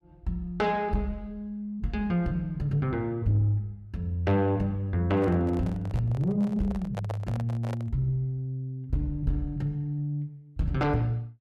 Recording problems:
distortion; soft clipping, signal-to-distortion ratio 12 dB
handling noise; from 5 to 8 s; peak -4 dB vs average level

